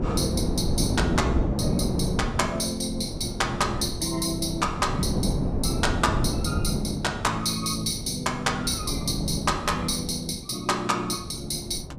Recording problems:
wind on the microphone; below 290 Hz, SNR 3 dB

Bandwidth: 15.5 kHz